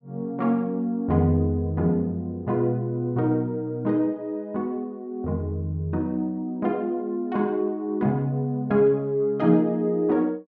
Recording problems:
none

